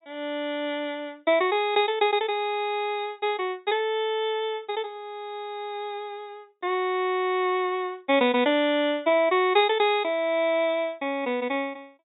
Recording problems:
low-pass filter; nothing above 4 kHz

